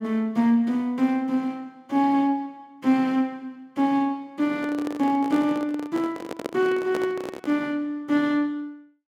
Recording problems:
microphone handling noise; from 4.5 to 7.5 s; peak -1 dB vs average level

